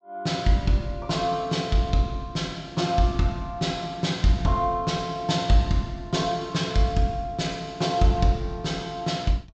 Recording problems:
treble missing; nothing above 8 kHz

